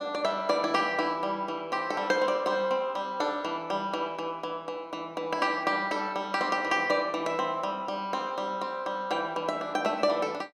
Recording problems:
none

